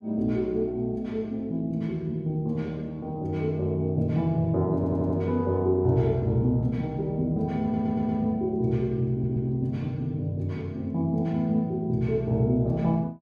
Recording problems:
audio stuttering; at 5 s, at 7.5 s and at 9 s

